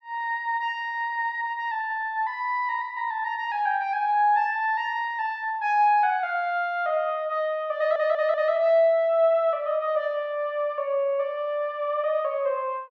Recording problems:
audio stuttering; at 8 s

